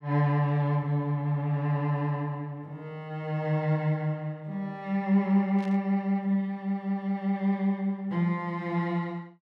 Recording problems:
static burst; at 5.5 s; peak -15 dB vs average level

